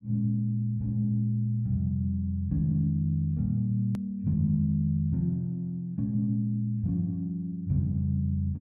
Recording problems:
click at an edit; at 4 s

